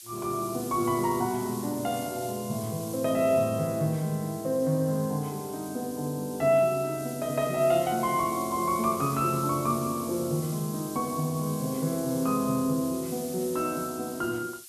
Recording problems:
hiss; slope +5 dB per octave, SNR 13 dB

